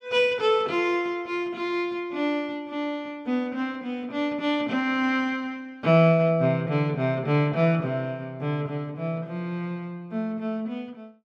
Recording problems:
none

